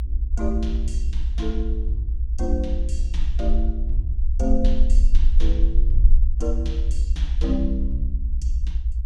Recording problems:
rumble; below 56 Hz, SNR -7 dB

